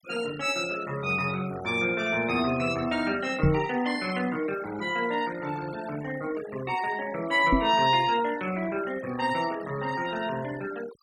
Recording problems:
noise reduction artefacts; signal-to-artefact ratio 16 dB
microphone bump; at 3.5 s and at 7.5 s; peak +7 dB vs average level

